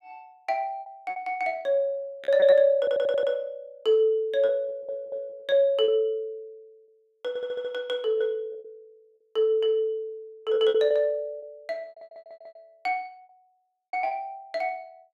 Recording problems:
lost packets; 8% of the sound replaced, filled with repeated pitch periods
audio stuttering; 4 times, first at 3 s

